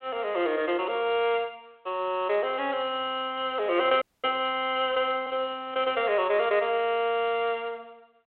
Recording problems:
telephone audio; 280 Hz to 3.4 kHz, G.726
audio freezing; at 4 s

